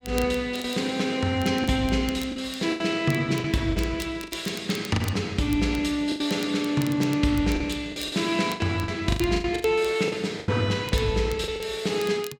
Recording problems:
crackle; vinyl, SNR 19 dB
lost packets; 10% of the sound replaced, filled with the last packet

